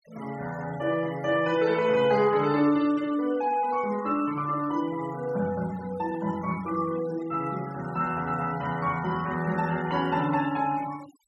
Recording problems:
noise reduction artefacts; signal-to-artefact ratio 19 dB

